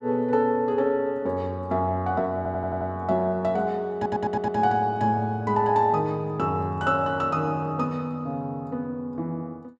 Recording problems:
stutter; at 2.5 s and at 4 s

